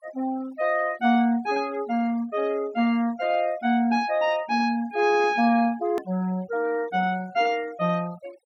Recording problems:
noise reduction artefacts; signal-to-artefact ratio 23 dB
hard cut with a click; at 6 s

